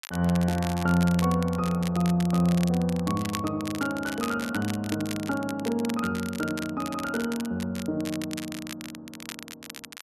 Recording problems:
crackle; vinyl, SNR 13 dB

